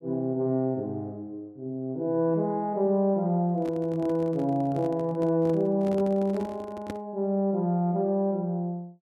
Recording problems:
microphone handling noise; from 3.5 to 7 s; peak -5 dB vs average level

